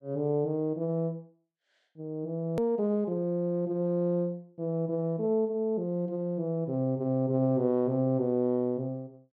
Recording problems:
hard cut with a click; at 2.5 s

